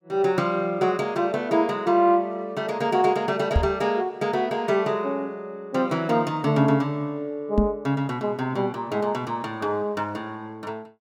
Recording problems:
microphone thump; at 3.5 s and at 7.5 s; peak +6 dB vs average level

